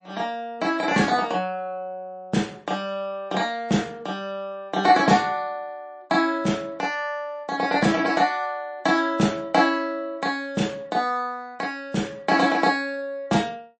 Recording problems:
lossy compression; MP3, log-spectral distance 2 dB, nothing above 8.2 kHz

